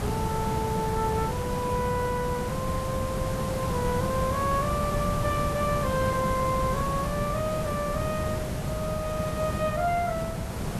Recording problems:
background hiss; slope -6 dB per octave, SNR 1 dB

